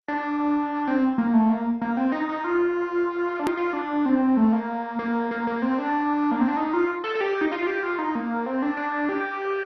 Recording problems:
lossy compression; MP2, log-spectral distance 3 dB, nothing above 13.7 kHz
click at an edit; at 3.5 s

